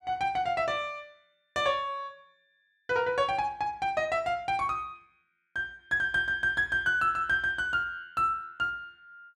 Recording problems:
none

